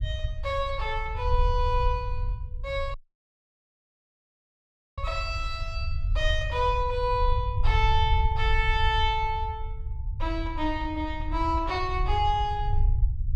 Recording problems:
rumble; below 74 Hz, SNR 2 dB
audio cutting out; at 3 s for 2 s

